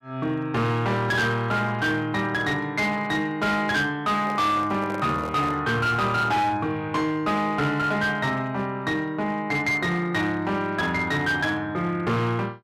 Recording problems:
distorted audio; hard clipping, signal-to-distortion ratio 11 dB
handling noise; from 4 to 5.5 s; peak -9 dB vs average level

